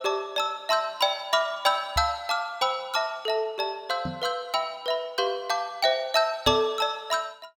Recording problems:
knock on the microphone; at 2 s, at 4 s and at 6.5 s; peak -2 dB vs average level

